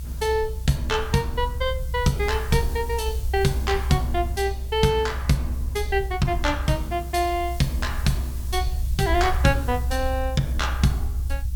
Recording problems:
background hiss; SNR 20 dB
low-frequency rumble; below 66 Hz, strongest tone 64 Hz, SNR 5 dB

